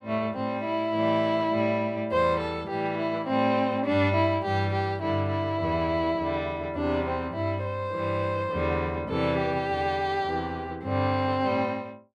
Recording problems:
none

